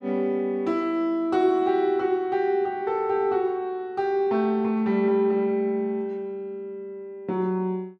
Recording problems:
none

